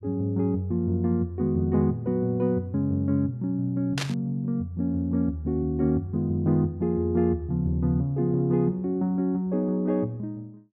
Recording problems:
static burst; at 4 s; peak 0 dB vs average level

